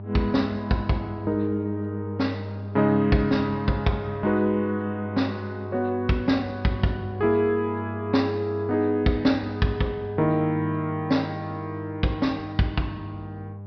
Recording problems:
treble cut off; nothing above 5.5 kHz
hum; 50 Hz, harmonics up to 800 Hz, SNR 11 dB

